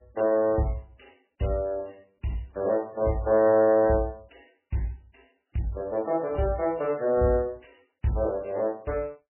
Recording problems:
codec artefacts; AAC, then MP3, log-spectral distance 4 dB, nothing above 2.9 kHz

